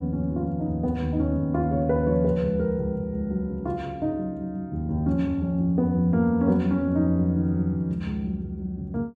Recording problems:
none

